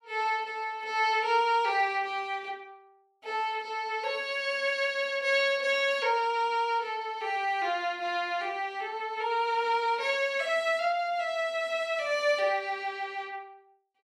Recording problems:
none

